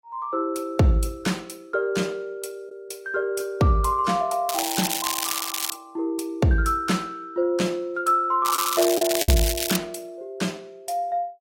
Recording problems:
lossy compression; AAC, log-spectral distance 4 dB, nothing above 16 kHz
packet loss; 1.2% of the sound replaced, filled with the last packet
crackle; from 4.5 to 5.5 s and from 8.5 to 10 s; loose cable, SNR 2 dB

